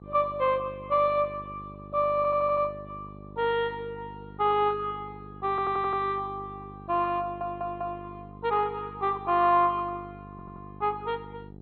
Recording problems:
lossy compression; MP2, log-spectral distance 2 dB, nothing above 3.6 kHz
electrical hum; 50 Hz, harmonics up to 850 Hz, SNR 18 dB
audio stuttering; 4 times, first at 2 s

